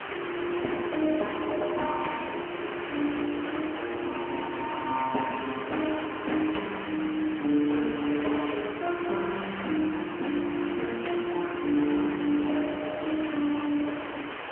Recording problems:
phone line; 240 Hz to 3.2 kHz, AMR-NB
background hiss; SNR 8 dB

